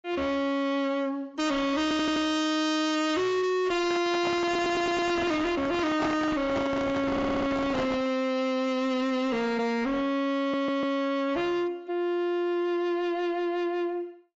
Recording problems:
lossy codec; AAC, log-spectral distance 2 dB, nothing above 7.3 kHz
distortion; soft clipping, signal-to-distortion ratio 5 dB
stutter; 4 times, first at 2 s
handling noise; from 4 to 8 s; peak +3 dB vs average level

